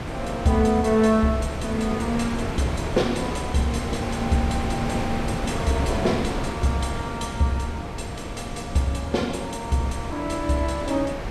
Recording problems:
wind on the microphone; below 770 Hz, SNR 5 dB

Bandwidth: 14 kHz